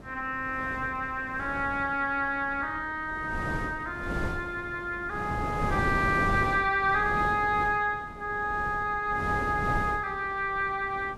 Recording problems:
wind on the microphone; below 510 Hz, SNR 8 dB

